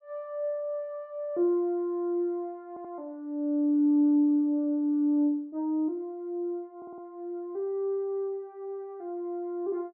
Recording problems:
stutter; at 2.5 s and at 7 s

